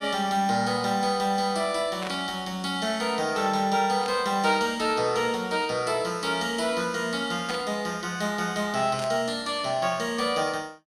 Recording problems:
burst of static; 4 times, first at 2 s; peak -5 dB vs average level

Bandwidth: 15.5 kHz